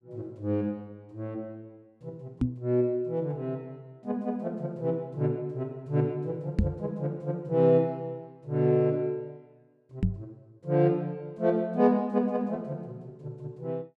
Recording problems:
microphone bump; at 2.5 s, at 6.5 s and at 10 s; peak +7 dB vs average level

